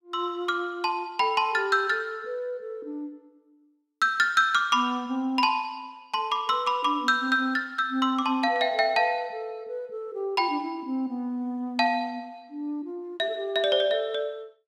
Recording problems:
none

